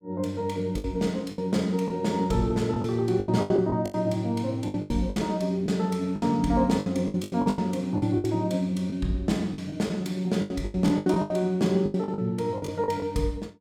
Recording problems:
packet loss; 14% of the sound replaced, filled with the last packet

